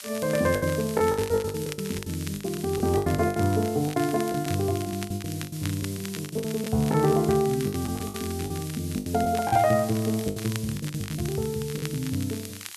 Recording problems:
background hiss; slope +5 dB per octave, SNR 14 dB
crackle; vinyl, SNR 15 dB
lost packets; 17% of the sound replaced, filled with the last packet

